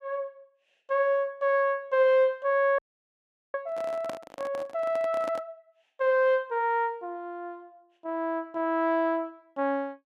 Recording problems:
audio freezing; at 3 s for 1 s
microphone handling noise; from 3.5 to 5.5 s; peak -5 dB vs average level

